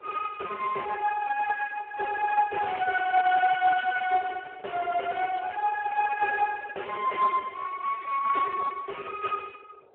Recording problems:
phone line; 300 Hz to 2.2 kHz, Speex
wind noise; below 660 Hz, SNR 23 dB
crackling; at 1.5 s; loose cable, SNR 27 dB

